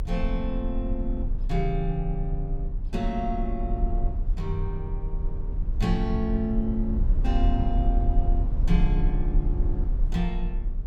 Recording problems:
rumble; below 50 Hz, strongest tone 28 Hz, SNR -2 dB

